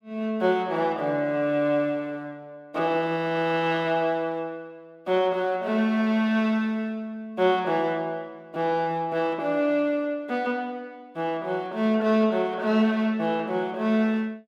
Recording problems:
none

